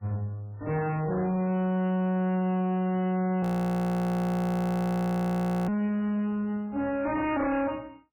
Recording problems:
codec artefacts; MP3, log-spectral distance 2 dB, nothing above 19.5 kHz
distorted audio; hard clipping, signal-to-distortion ratio 8 dB
audio freezing; at 3.5 s for 2 s

